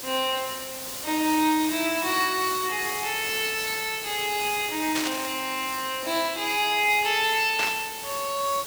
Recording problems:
background hiss; slope -1 dB per octave, SNR 7 dB
burst of static; at 5 s and at 7.5 s; peak 0 dB vs average level

